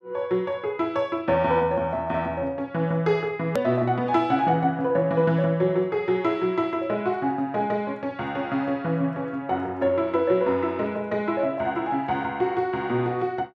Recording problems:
edit click; at 3.5 s

